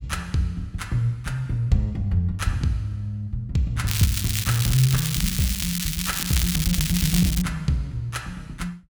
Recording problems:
crackling; from 4 to 7.5 s; loose cable, SNR 2 dB

